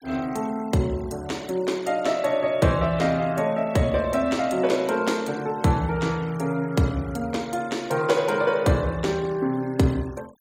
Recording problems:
denoising artefacts; signal-to-artefact ratio 23 dB

